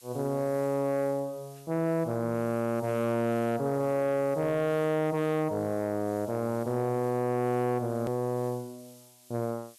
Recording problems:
distortion; soft clipping, signal-to-distortion ratio 12 dB
hiss; slope +6 dB per octave, SNR 24 dB
edit click; at 8 s

